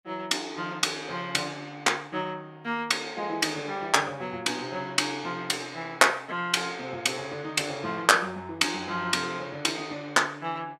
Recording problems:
none

